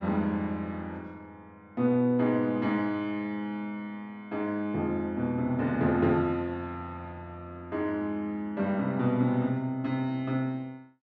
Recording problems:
none

